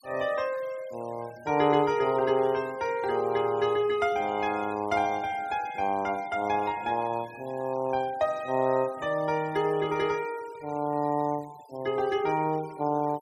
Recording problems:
noise reduction artefacts; signal-to-artefact ratio 23 dB

